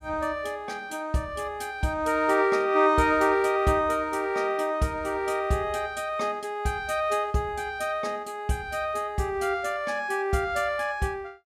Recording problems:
none

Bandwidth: 16 kHz